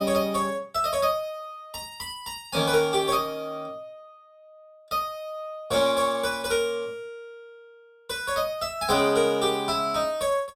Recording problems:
none

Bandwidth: 16.5 kHz